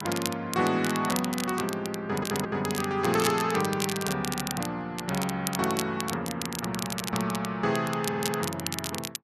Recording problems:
crackle; vinyl, SNR 6 dB
audio stuttering; at 2 s and at 8 s

